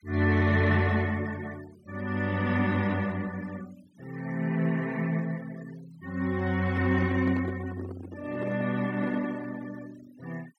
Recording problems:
denoising artefacts; signal-to-artefact ratio 22 dB
handling noise; from 6.5 to 9.5 s; peak -5 dB vs average level

